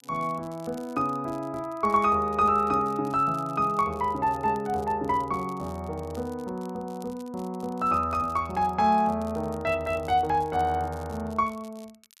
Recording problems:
crackle; vinyl, SNR 27 dB

